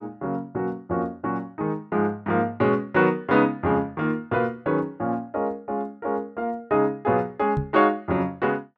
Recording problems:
microphone bump; at 7.5 s; peak +2 dB vs average level

